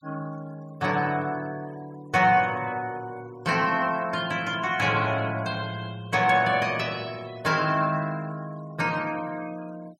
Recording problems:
noise reduction artefacts; signal-to-artefact ratio 24 dB

